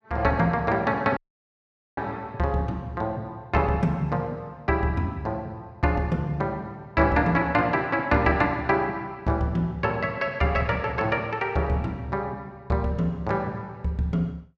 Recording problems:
audio cutting out; at 1 s for 1 s

